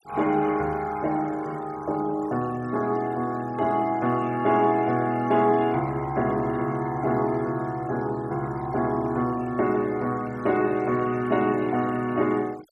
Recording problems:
denoising artefacts; signal-to-artefact ratio 23 dB

